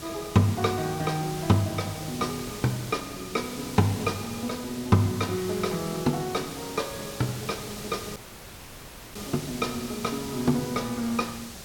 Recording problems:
background hiss; slope -2 dB per octave, SNR 10 dB
dropout; at 8 s for 1 s

